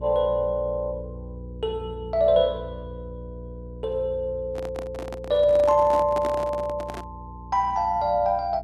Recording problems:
hum; 60 Hz, harmonics up to 480 Hz, SNR 16 dB
microphone handling noise; from 4.5 to 7 s; peak -5 dB vs average level

